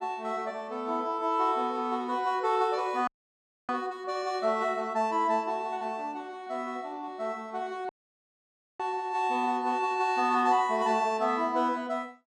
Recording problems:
dropout; at 3 s for 0.5 s and at 8 s for 1 s

